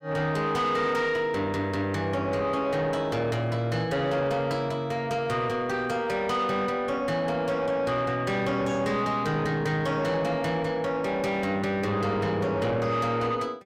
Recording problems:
distorted audio; soft clipping, signal-to-distortion ratio 11 dB

